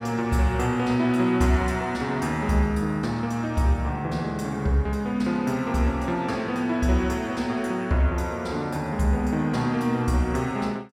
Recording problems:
none

